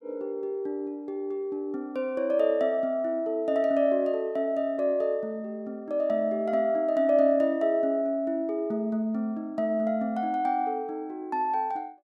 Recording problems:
none

